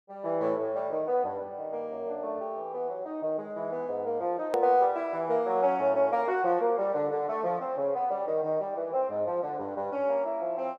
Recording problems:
edit click; at 4.5 s

